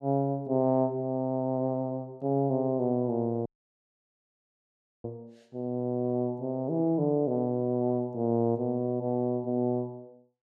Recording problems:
dropout; at 3.5 s for 1.5 s

